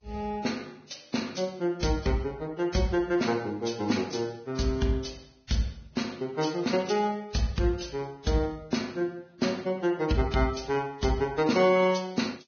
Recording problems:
lossy codec; Vorbis, log-spectral distance 4 dB, nothing above 6.3 kHz

